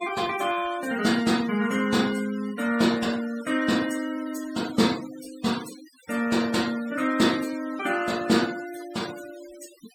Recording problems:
noise reduction artefacts; signal-to-artefact ratio 16 dB

